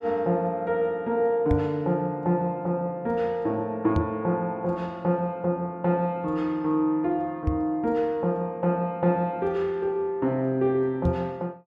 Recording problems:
microphone bump; 4 times, first at 1.5 s; peak +4 dB vs average level

